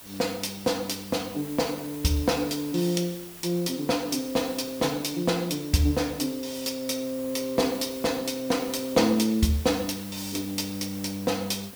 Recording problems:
background hiss; slope -2 dB per octave, SNR 14 dB

